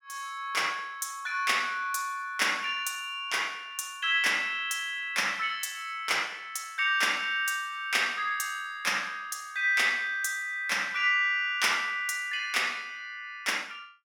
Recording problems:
none

